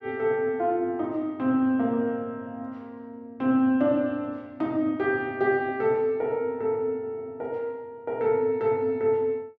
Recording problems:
none

